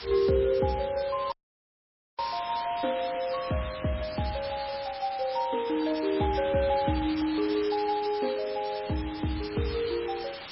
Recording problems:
codec artefacts; MP3, log-spectral distance 18 dB, nothing above 5.5 kHz
hiss; SNR 12 dB
audio cutting out; at 1.5 s for 1 s

